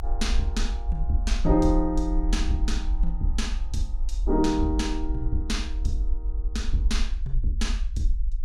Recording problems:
rumble; below 52 Hz, SNR 0 dB

